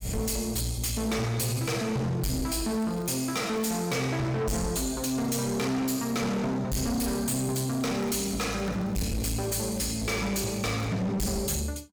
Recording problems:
distortion; soft clipping, signal-to-distortion ratio 6 dB
crackle; from 2.5 to 3.5 s, from 7 to 9 s and from 9 to 11 s; loose cable, SNR 23 dB

